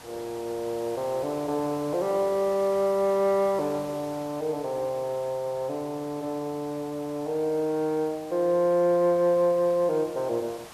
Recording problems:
hiss; SNR 19 dB

